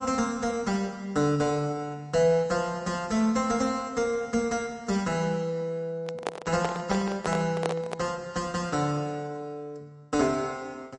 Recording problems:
codec artefacts; MP3, log-spectral distance 2 dB
handling noise; from 6 to 8 s; peak +3 dB vs average level

